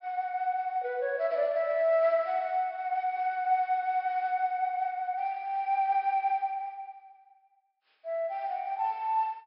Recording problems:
treble cut off; nothing above 5.3 kHz

